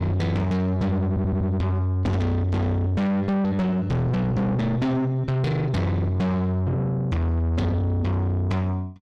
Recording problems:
distortion; soft clipping, signal-to-distortion ratio 6 dB
stutter; at 1 s

